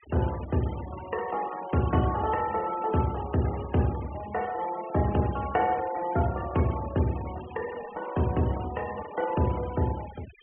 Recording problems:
low-pass filter; nothing above 3.2 kHz
denoising artefacts; signal-to-artefact ratio 17 dB

